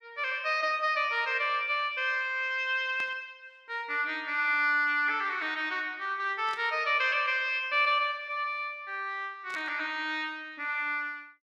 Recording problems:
static burst; at 3 s, at 6.5 s and at 9.5 s; peak -11 dB vs average level

